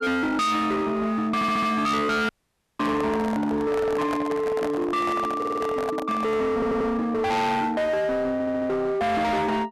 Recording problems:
distortion; hard clipping, signal-to-distortion ratio 7 dB
audio stuttering; 4 times, first at 1.5 s
audio cutting out; at 2.5 s for 0.5 s
microphone handling noise; from 3 to 6.5 s; peak -2 dB vs average level

